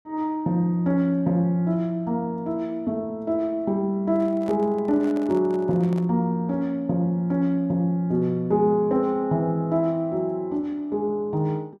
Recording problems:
microphone handling noise; from 4 to 6 s; peak -11 dB vs average level

